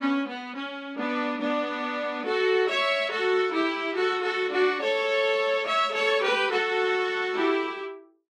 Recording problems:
none

